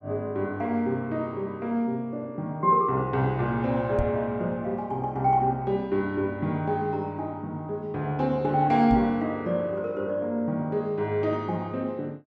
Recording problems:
microphone thump; at 4 s and at 9 s; peak +2 dB vs average level

